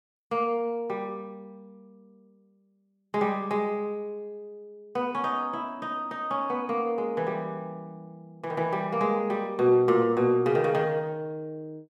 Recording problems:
none

